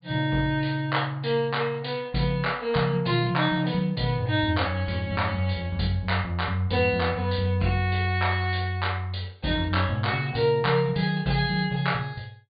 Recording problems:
treble missing; nothing above 4.7 kHz

